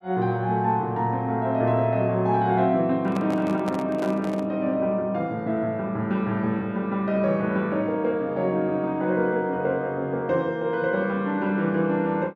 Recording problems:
handling noise; from 3 to 4.5 s; peak -5 dB vs average level

